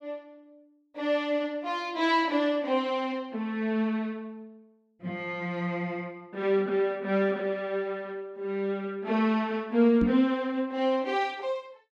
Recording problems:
microphone thump; at 10 s; peak +2 dB vs average level

